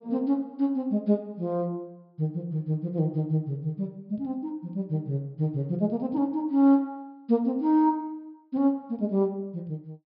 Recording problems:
treble cut off; nothing above 5.5 kHz

